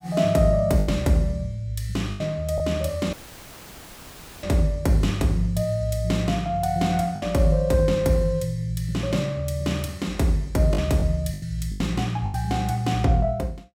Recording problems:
packet loss; 4% of the sound replaced, filled with the last packet
audio cutting out; at 3 s for 1.5 s; filled with static

